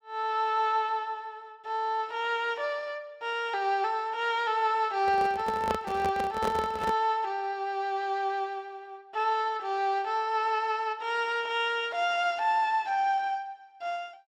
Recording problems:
microphone handling noise; from 5 to 7 s; peak +1 dB vs average level

